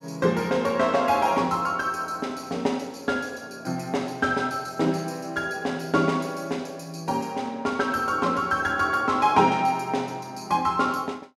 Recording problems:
none

